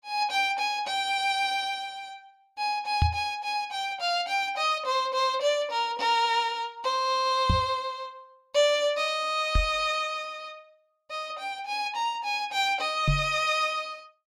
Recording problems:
microphone bump; 4 times, first at 3 s; peak +6 dB vs average level

